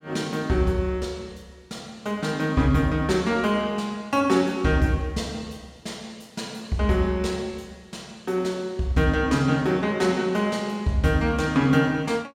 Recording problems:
none

